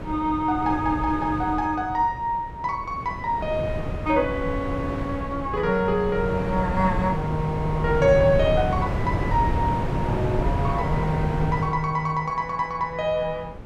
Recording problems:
wind on the microphone; below 370 Hz, SNR 4 dB

